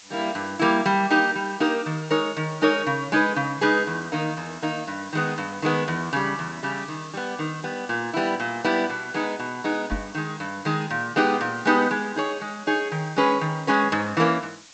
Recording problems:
treble cut off; nothing above 8 kHz
background hiss; slope +3 dB per octave, SNR 21 dB
microphone bump; at 10 s; peak -1 dB vs average level

